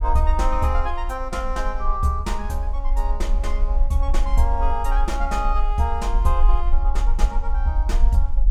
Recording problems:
rumble; below 44 Hz, strongest tone 20 Hz, SNR -2 dB

